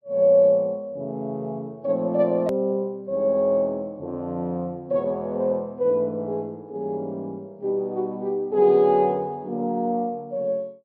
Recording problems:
treble cut off; nothing above 5.5 kHz
edit click; at 2.5 s

